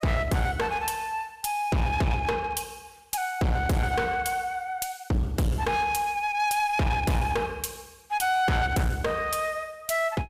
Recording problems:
distortion; hard clipping, uneven, signal-to-distortion ratio 6 dB

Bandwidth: 15.5 kHz